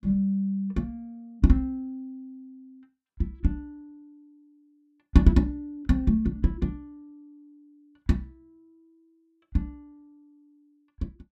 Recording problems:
none

